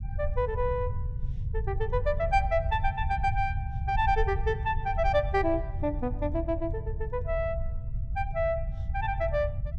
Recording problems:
low-frequency rumble; below 92 Hz, SNR 4 dB

